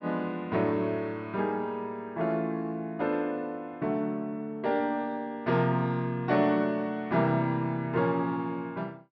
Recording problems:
low-pass filter; nothing above 5.7 kHz

